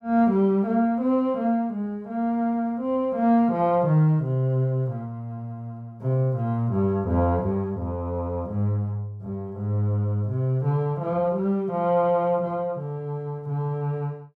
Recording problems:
none

